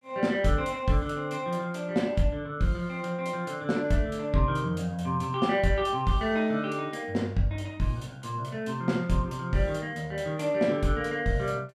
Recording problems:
none

